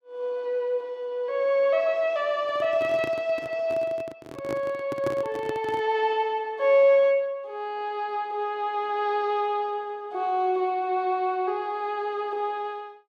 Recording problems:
microphone handling noise; from 2.5 to 6 s; peak -2 dB vs average level

